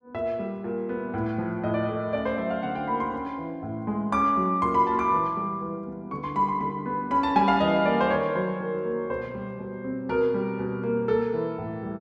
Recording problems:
none

